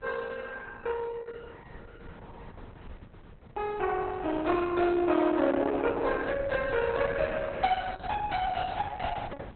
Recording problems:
lossy compression; Opus, log-spectral distance 4 dB, nothing above 4.1 kHz
wind noise; below 280 Hz, SNR 18 dB

